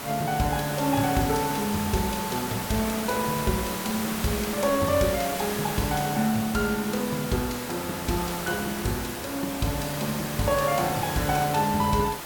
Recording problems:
background hiss; slope -3 dB per octave, SNR 5 dB

